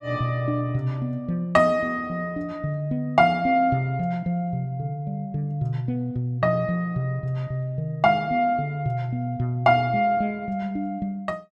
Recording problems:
none

